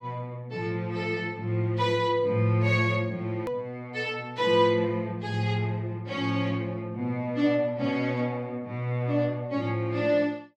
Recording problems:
hard cut with a click; at 3.5 s

